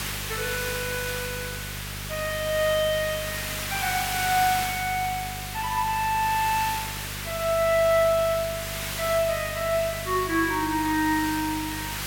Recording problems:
mains hum; 50 Hz, harmonics up to 650 Hz, SNR 13 dB
background hiss; SNR 6 dB

